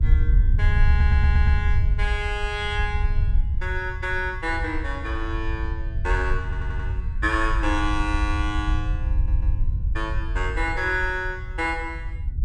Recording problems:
wind noise; below 76 Hz, SNR -2 dB
stutter; at 1 s, at 6.5 s and at 9 s

